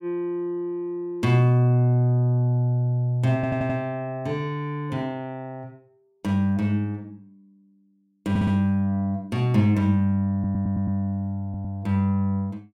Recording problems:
stutter; 4 times, first at 3.5 s

